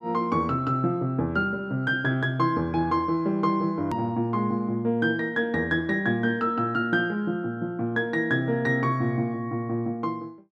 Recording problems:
edit click; at 4 s

